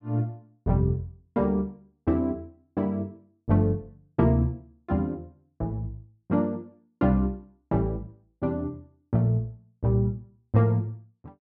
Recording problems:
none

